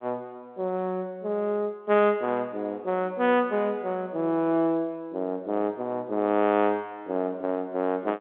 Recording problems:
telephone audio; 220 Hz to 3.7 kHz, G.711

